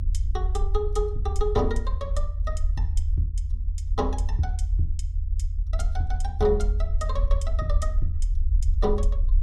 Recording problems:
low-frequency rumble; below 74 Hz, SNR -3 dB

